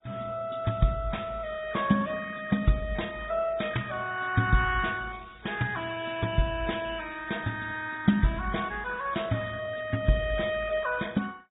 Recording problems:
low-pass filter; nothing above 3.7 kHz
lossy compression; Vorbis, then MP2, log-spectral distance 5 dB
crackle; at 5 s; loose cable, SNR 27 dB

